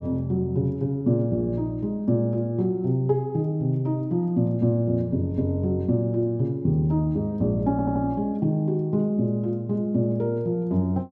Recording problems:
stutter; at 7.5 s

